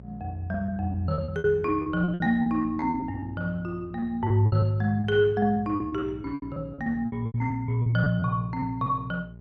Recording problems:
electrical hum; 60 Hz, harmonics up to 660 Hz, SNR 17 dB
lost packets; 17% of the sound replaced, filled with repeated pitch periods

